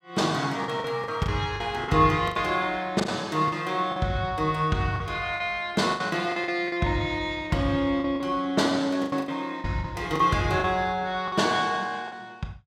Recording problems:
packet loss; 10% of the sound replaced, filled with the last packet

